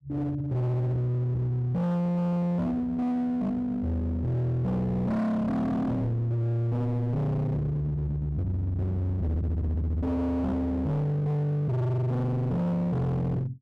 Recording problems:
distorted audio; hard clipping, uneven, signal-to-distortion ratio 6 dB

